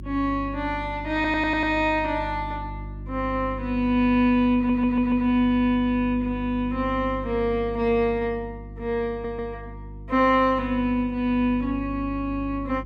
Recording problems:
electrical hum; 50 Hz, harmonics up to 350 Hz, SNR 13 dB
stutter; at 1 s, at 4.5 s and at 9 s

